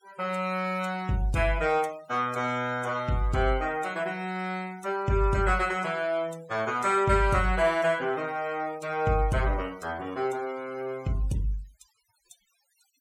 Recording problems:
denoising artefacts; signal-to-artefact ratio 23 dB

